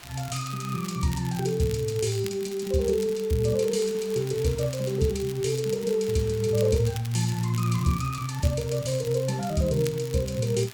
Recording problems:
background hiss; SNR 21 dB
crackle; vinyl, SNR 17 dB

